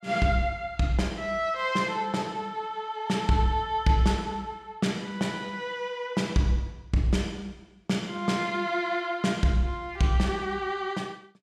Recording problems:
none

